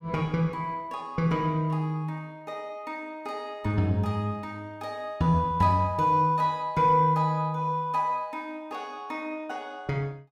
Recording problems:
none

